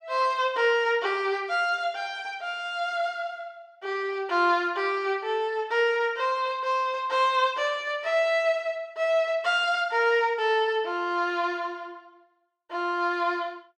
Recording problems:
none

